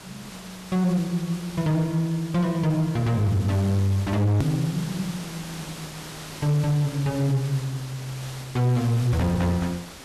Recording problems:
distorted audio; hard clipping, signal-to-distortion ratio 12 dB
background hiss; slope -2 dB per octave, SNR 15 dB
click at an edit; at 4.5 s

